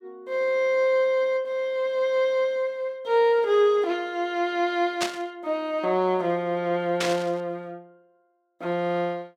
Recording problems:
burst of static; at 5 s and at 7 s; peak +2 dB vs average level

